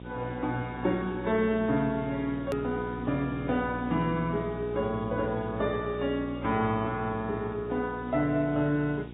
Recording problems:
low-pass filter; nothing above 4 kHz
codec artefacts; AAC, then MP2, log-spectral distance 6 dB
hum; 60 Hz, harmonics up to 900 Hz, SNR 10 dB
background hiss; SNR 27 dB
hard cut with a click; at 2.5 s

